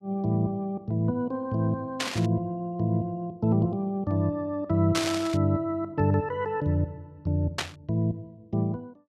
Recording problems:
static burst; at 2 s, at 5 s and at 7.5 s; peak +3 dB vs average level

